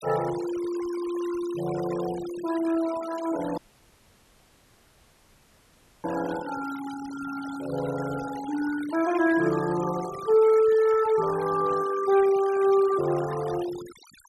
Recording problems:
noise reduction artefacts; signal-to-artefact ratio 16 dB
dropout; at 3.5 s for 2.5 s

